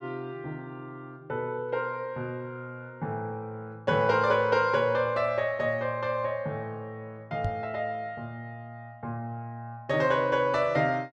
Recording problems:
microphone bump; at 7.5 s; peak 0 dB vs average level

